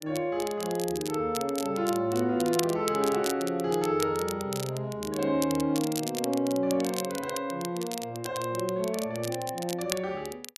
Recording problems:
crackling; vinyl, SNR 9 dB

